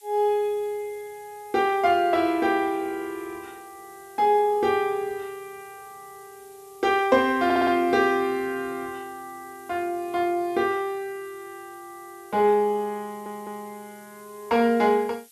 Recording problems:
hiss; slope +6 dB per octave, SNR 27 dB
stutter; at 7.5 s and at 13 s

